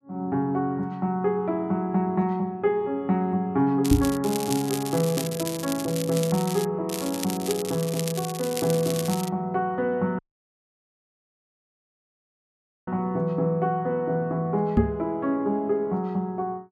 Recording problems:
crackle; from 4 to 6.5 s and from 7 to 9.5 s; loose cable, SNR 9 dB
microphone bump; at 4 s and at 15 s; peak +9 dB vs average level
dropout; at 10 s for 2.5 s

